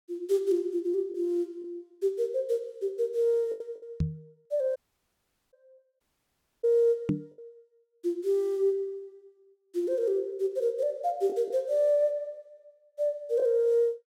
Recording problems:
packet loss; 3% of the sound replaced, filled with the last packet
microphone bump; at 4 s and at 7 s; peak +4 dB vs average level
dropout; at 5 s for 1 s and at 6 s for 0.5 s

